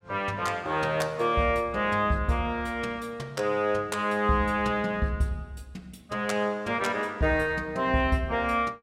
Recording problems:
none

